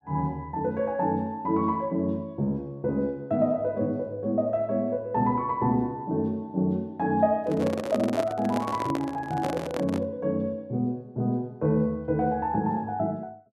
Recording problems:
microphone handling noise; from 7.5 to 10 s; peak 0 dB vs average level

